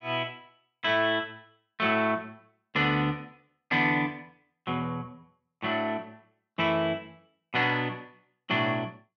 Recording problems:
none

